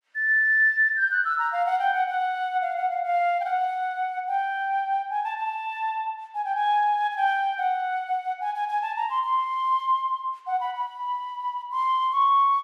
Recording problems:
none

